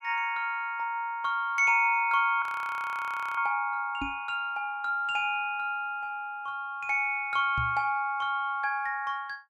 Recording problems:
audio freezing; at 2.5 s for 1 s
microphone thump; at 4 s and at 7.5 s; peak -4 dB vs average level

